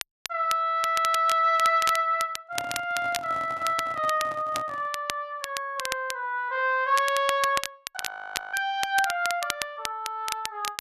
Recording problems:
crackling; vinyl, SNR 9 dB
microphone handling noise; from 2.5 to 5 s; peak -9 dB vs average level
frozen audio; at 8 s for 0.5 s

